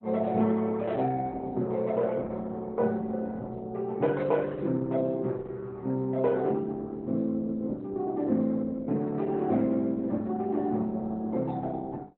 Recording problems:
lossy codec; Opus, log-spectral distance 2 dB, nothing above 4 kHz

